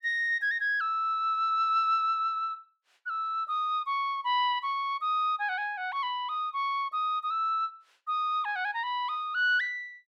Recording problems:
none

